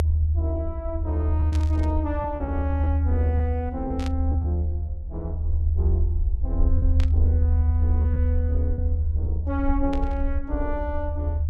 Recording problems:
low-frequency rumble; below 78 Hz, strongest tone 78 Hz, SNR -7 dB
lost packets; 4% of the sound replaced, filled with repeated pitch periods
burst of static; 4 times, first at 1.5 s; peak -2 dB vs average level

